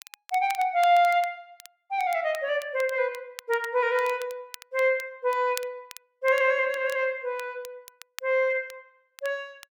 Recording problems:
crackling; vinyl, SNR 20 dB

